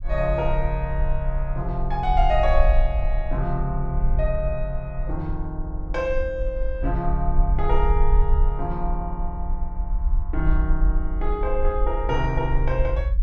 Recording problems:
low-frequency rumble; below 50 Hz, SNR 0 dB

